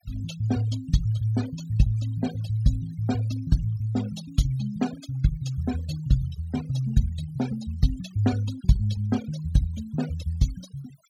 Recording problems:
noise reduction artefacts; signal-to-artefact ratio 16 dB

